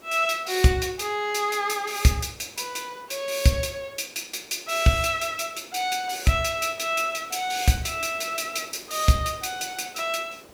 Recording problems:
hiss; slope -6 dB per octave, SNR 23 dB

